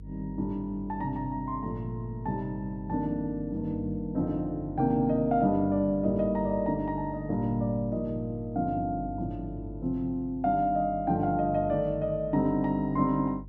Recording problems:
hum; 50 Hz, harmonics up to 350 Hz, SNR 15 dB

